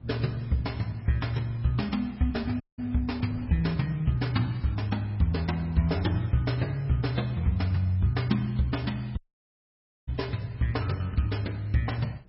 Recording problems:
codec artefacts; MP3, log-spectral distance 3 dB, nothing above 5.5 kHz
wind noise; below 190 Hz, SNR 22 dB
dropout; at 2.5 s and at 9 s for 1 s

